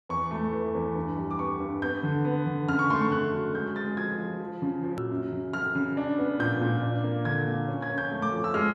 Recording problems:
edit click; at 5 s

